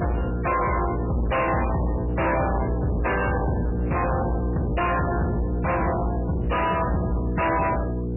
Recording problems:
codec artefacts; MP3, log-spectral distance 5 dB, nothing above 2.9 kHz
distorted audio; hard clipping, signal-to-distortion ratio 5 dB
electrical hum; 60 Hz, harmonics up to 660 Hz, SNR 3 dB

